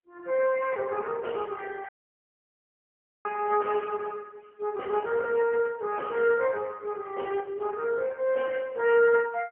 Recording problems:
phone line; 320 Hz to 3 kHz, AMR-NB, then MP3
dropout; at 2 s for 1.5 s

